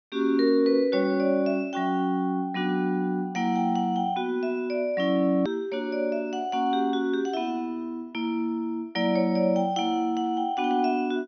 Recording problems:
low-pass filter; nothing above 6.1 kHz
click at an edit; at 5.5 s

